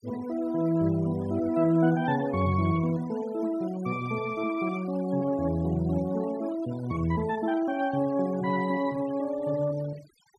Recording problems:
noise reduction artefacts; signal-to-artefact ratio 20 dB

